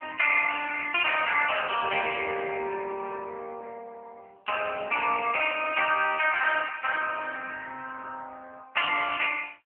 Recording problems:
phone line; 340 Hz to 3.1 kHz, AMR-NB

